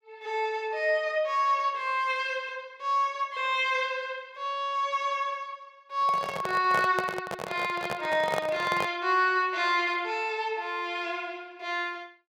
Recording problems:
handling noise; from 6 to 9 s; peak +1 dB vs average level

